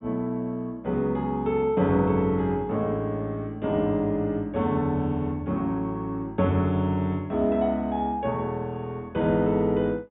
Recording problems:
treble cut off; nothing above 4 kHz

